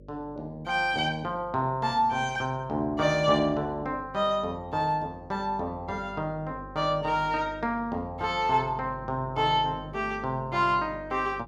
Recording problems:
electrical hum; 50 Hz, harmonics up to 600 Hz, SNR 19 dB

